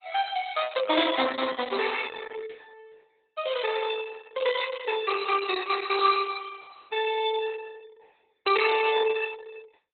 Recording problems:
lossy codec; Opus, log-spectral distance 6 dB, nothing above 4 kHz

